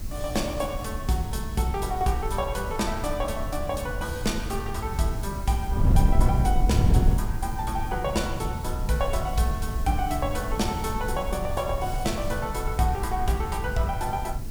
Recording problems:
background hiss; slope -1 dB per octave, SNR 17 dB
wind on the microphone; below 110 Hz, SNR 1 dB

